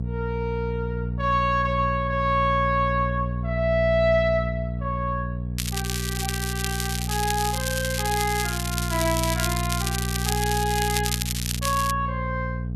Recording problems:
electrical hum; 60 Hz, harmonics up to 480 Hz, SNR 3 dB
crackle; from 5.5 to 12 s; loose cable, SNR 3 dB

